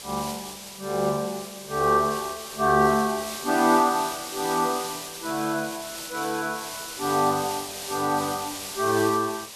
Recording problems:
background hiss; SNR 9 dB

